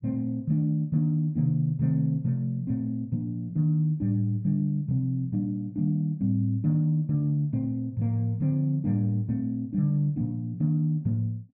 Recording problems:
none

